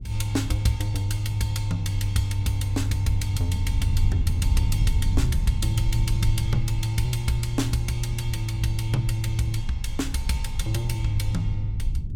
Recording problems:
rumble; below 88 Hz, SNR 4 dB

